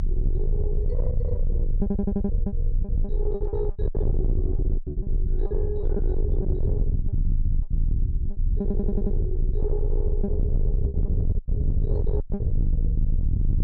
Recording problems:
treble missing; nothing above 6.6 kHz
distorted audio; soft clipping, signal-to-distortion ratio 7 dB
rumble; below 78 Hz, strongest tone 28 Hz, SNR -7 dB
lost packets; 10% of the sound replaced, filled with repeated pitch periods
audio stuttering; at 2 s and at 8.5 s

